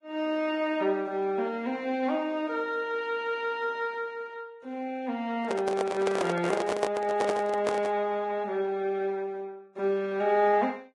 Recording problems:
codec artefacts; Vorbis, log-spectral distance 2 dB, nothing above 10.4 kHz
handling noise; from 5.5 to 8 s; peak +4 dB vs average level

